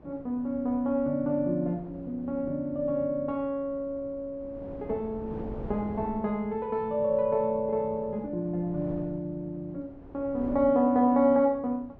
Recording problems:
wind on the microphone; below 440 Hz, SNR 18 dB

